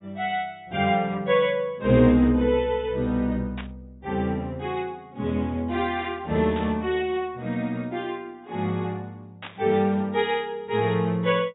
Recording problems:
low-pass filter; nothing above 4 kHz
static burst; at 3.5 s, at 6.5 s and at 9.5 s; peak -8 dB vs average level

